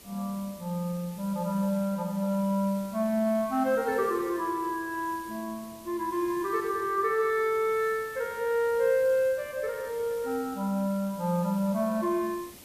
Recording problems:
hiss; SNR 19 dB

